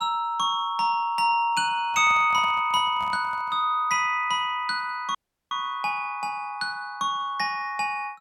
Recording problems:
handling noise; from 2 to 3.5 s; peak -12 dB vs average level
audio cutting out; at 5 s

